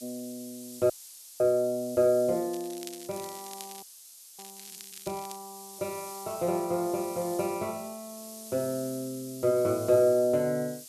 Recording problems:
hiss; SNR 15 dB
audio freezing; at 1 s and at 4 s for 0.5 s
crackling; from 2.5 to 5.5 s; loose cable, SNR 17 dB

